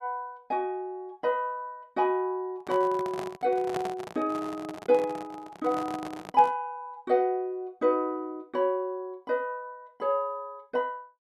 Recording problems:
handling noise; from 2.5 to 6.5 s; peak -1 dB vs average level

